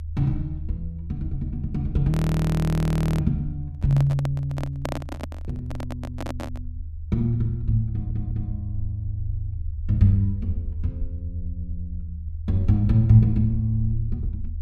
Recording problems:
rumble; below 80 Hz, SNR 10 dB
frozen audio; at 2 s for 1 s
microphone handling noise; from 3.5 to 6.5 s; peak -2 dB vs average level
audio stuttering; at 8 s

